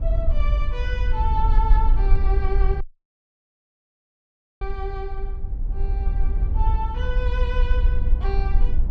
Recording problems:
wind noise; below 54 Hz, SNR -8 dB
dropout; at 3 s for 2 s

